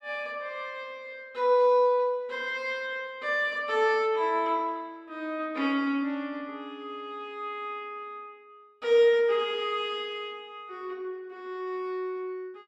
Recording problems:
none

